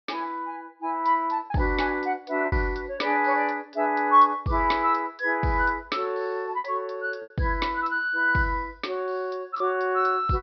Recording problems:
treble cut off; nothing above 5.5 kHz
lost packets; 3% of the sound replaced, filled with repeated pitch periods

